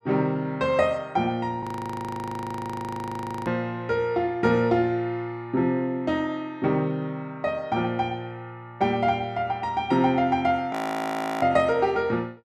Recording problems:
frozen audio; at 1.5 s for 2 s and at 11 s for 0.5 s

